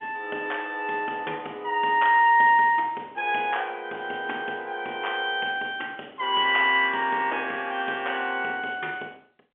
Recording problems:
phone line; 320 Hz to 3.4 kHz, G.711

